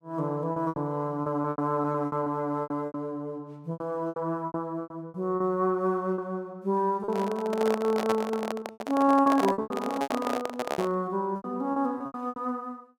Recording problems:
lost packets; 14% of the sound replaced, filled with repeated pitch periods
microphone handling noise; from 7 to 11 s; peak +3 dB vs average level

